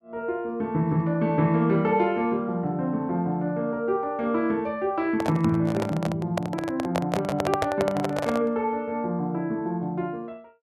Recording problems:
microphone handling noise; from 5 to 8.5 s; peak +3 dB vs average level

